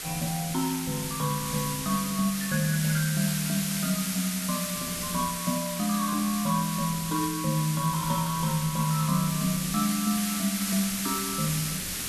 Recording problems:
background hiss; slope +2 dB per octave, SNR 3 dB
wind on the microphone; below 290 Hz, SNR 19 dB

